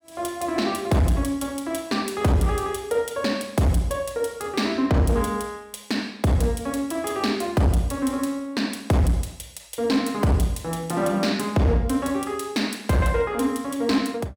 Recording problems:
distortion; hard clipping, signal-to-distortion ratio 10 dB

